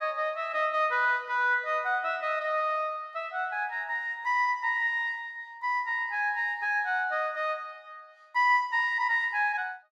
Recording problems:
none

